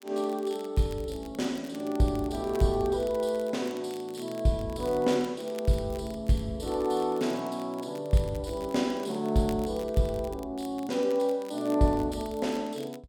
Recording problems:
crackle; vinyl, SNR 22 dB

